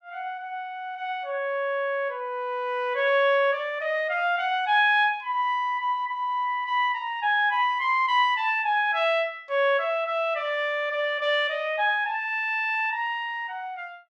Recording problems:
none

